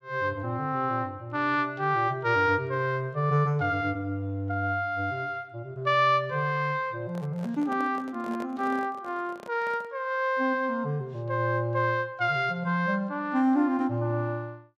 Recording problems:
handling noise; from 7 to 10 s; peak -10 dB vs average level

